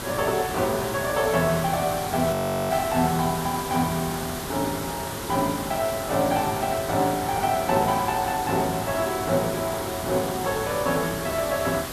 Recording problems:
electrical hum; 50 Hz, harmonics up to 350 Hz, SNR 21 dB
background hiss; slope -3 dB per octave, SNR 7 dB
frozen audio; at 2.5 s

